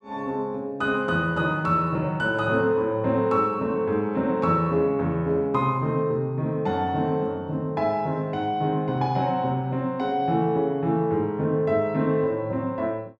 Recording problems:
none

